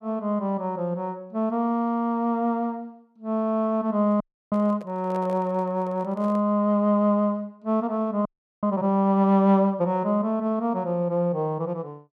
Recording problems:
microphone handling noise; from 4 to 6.5 s; peak -11 dB vs average level
frozen audio; at 4 s and at 8.5 s

